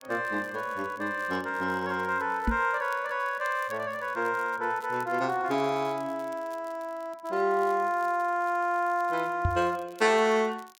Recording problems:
crackle; vinyl, SNR 27 dB
microphone bump; at 2.5 s and at 9.5 s; peak +4 dB vs average level

